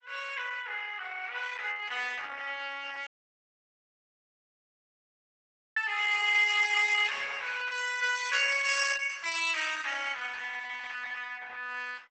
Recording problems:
codec artefacts; Opus, log-spectral distance 5 dB, nothing above 8.2 kHz
audio cutting out; at 3 s for 2.5 s

